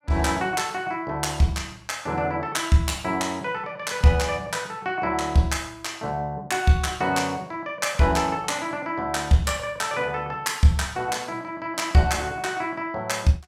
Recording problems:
none

